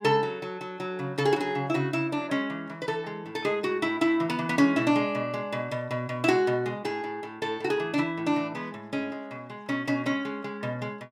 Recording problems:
none

